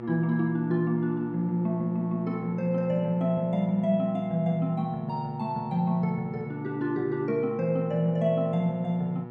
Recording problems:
electrical hum; 60 Hz, harmonics up to 1.8 kHz, SNR 13 dB

